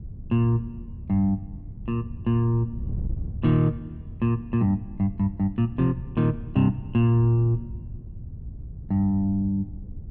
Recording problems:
wind on the microphone; below 120 Hz, SNR 14 dB

